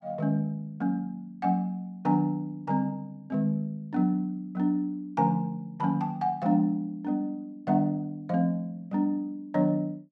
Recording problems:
none

